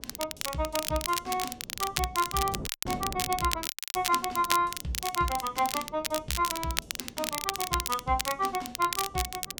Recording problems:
wind on the microphone; below 390 Hz, SNR 17 dB
crackle; vinyl, SNR 3 dB
dropout; at 2.5 s and at 3.5 s

